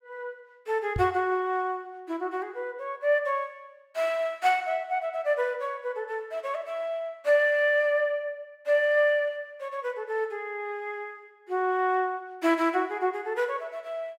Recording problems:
microphone bump; at 1 s; peak 0 dB vs average level

